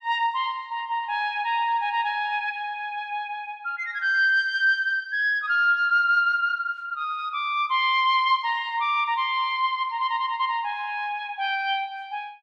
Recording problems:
none

